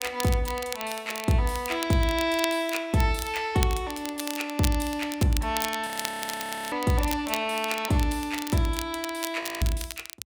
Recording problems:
crackle; vinyl, SNR 9 dB
audio freezing; at 6 s for 1 s and at 9.5 s

